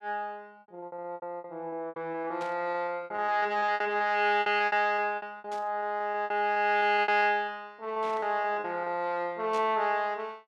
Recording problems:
packet loss; 14% of the sound replaced, filled with repeated pitch periods
burst of static; 4 times, first at 2.5 s; peak -12 dB vs average level

